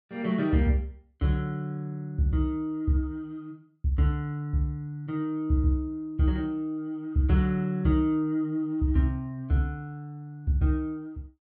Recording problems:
none

